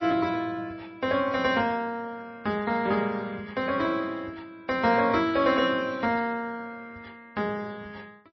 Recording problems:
lossy compression; MP3, then MP3, log-spectral distance 2 dB, nothing above 5 kHz

